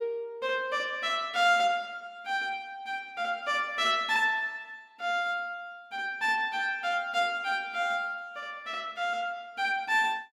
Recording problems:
none

